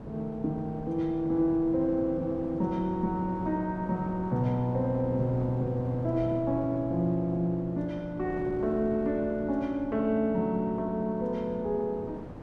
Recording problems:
wind on the microphone; below 430 Hz, SNR 13 dB

